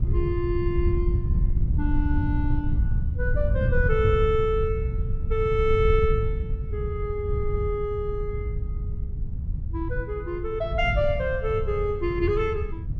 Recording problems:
wind on the microphone; below 98 Hz, SNR 1 dB

